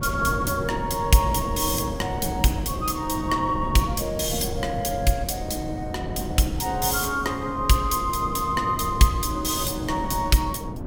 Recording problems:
wind on the microphone; below 280 Hz, SNR 8 dB

